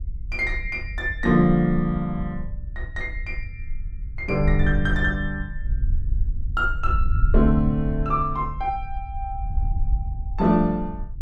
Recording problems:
wind on the microphone; below 60 Hz, SNR 5 dB

